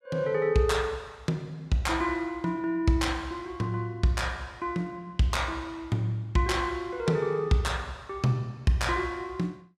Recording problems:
none

